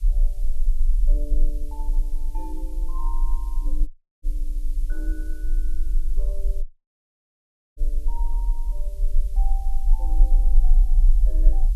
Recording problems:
hiss; SNR 11 dB
low-frequency rumble; below 38 Hz, strongest tone 20 Hz, SNR -18 dB
dropout; at 4 s and at 6.5 s for 1 s

